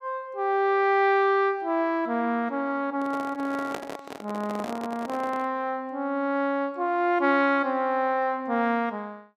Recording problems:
handling noise; from 3 to 5.5 s; peak -3 dB vs average level

